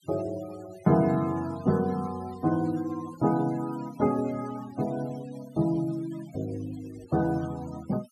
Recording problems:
noise reduction artefacts; signal-to-artefact ratio 20 dB

